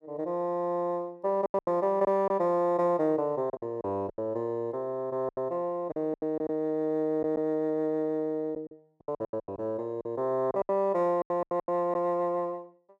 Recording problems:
lost packets; 11% of the sound replaced, filled with silence

